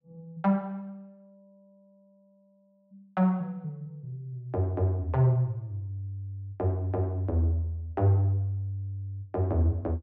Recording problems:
none

